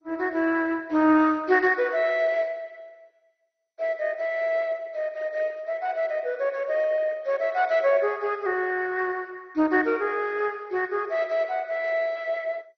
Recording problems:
lossy codec; MP2, log-spectral distance 3 dB, nothing above 5.2 kHz

